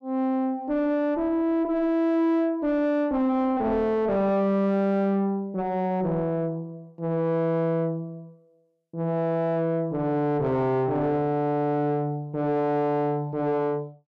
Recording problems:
distorted audio; soft clipping, signal-to-distortion ratio 5 dB

